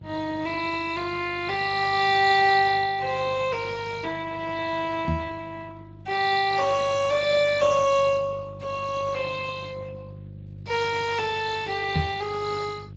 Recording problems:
lossy compression; Speex, log-spectral distance 5 dB
electrical hum; 50 Hz, harmonics up to 400 Hz, SNR 16 dB
knock on the microphone; at 5 s and at 12 s; peak +4 dB vs average level

